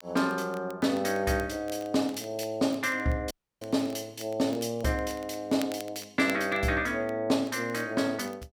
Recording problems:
crackle; vinyl, SNR 21 dB
dropout; at 3.5 s

